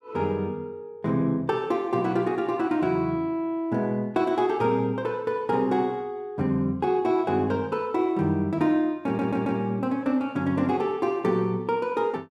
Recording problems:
stutter; at 9 s

